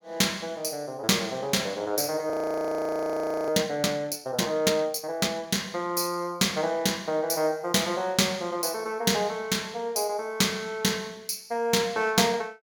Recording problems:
frozen audio; at 2.5 s for 1 s

